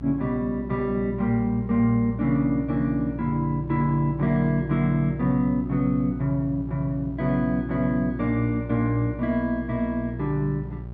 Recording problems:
electrical hum; 60 Hz, harmonics up to 780 Hz, SNR 12 dB

